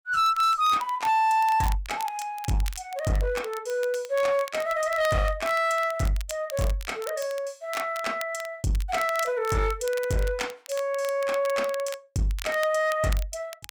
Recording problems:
distortion; hard clipping, uneven, signal-to-distortion ratio 11 dB
crackling; vinyl, SNR 17 dB

